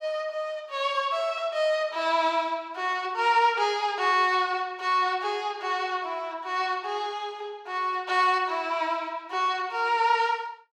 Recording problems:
none

